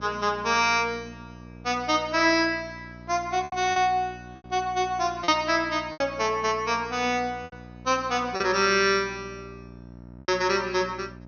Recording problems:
treble cut off; nothing above 6.4 kHz
hum; 60 Hz, harmonics up to 1.3 kHz, SNR 20 dB
lost packets; 5% of the sound replaced, filled with repeated pitch periods

